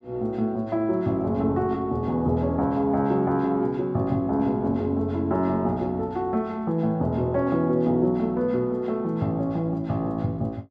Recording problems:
none

